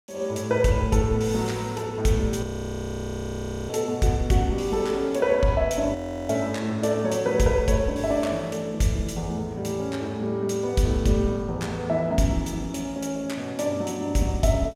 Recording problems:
audio freezing; at 2.5 s for 1.5 s and at 6 s

